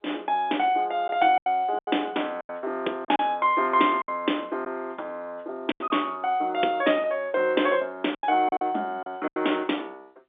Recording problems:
telephone audio; 260 Hz to 3.6 kHz, G.711
packet loss; 7% of the sound replaced, filled with silence

